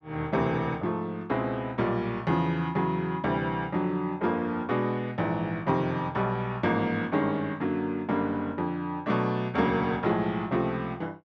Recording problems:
none

